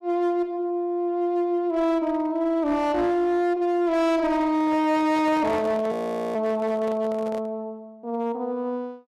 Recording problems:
distortion; hard clipping, signal-to-distortion ratio 12 dB
microphone handling noise; from 4.5 to 7.5 s; peak -9 dB vs average level
audio freezing; at 6 s

